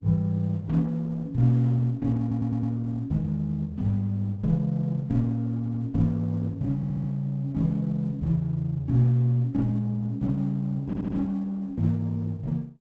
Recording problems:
lossy codec; Opus, log-spectral distance 2 dB, nothing above 7.6 kHz
stutter; 4 times, first at 2 s

